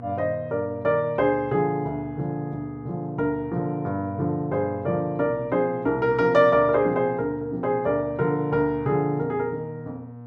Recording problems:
electrical hum; 60 Hz, harmonics up to 1.1 kHz, SNR 16 dB

